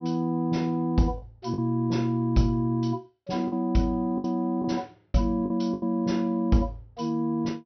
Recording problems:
low-pass filter; nothing above 5.9 kHz
lost packets; 5% of the sound replaced, filled with the last packet

